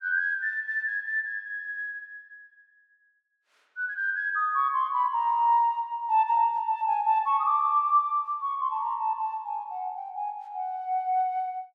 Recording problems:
none

